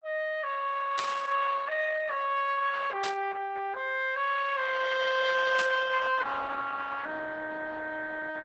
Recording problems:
lossy codec; Opus, log-spectral distance 5 dB
static burst; at 1 s, at 3 s and at 5.5 s; peak -3 dB vs average level

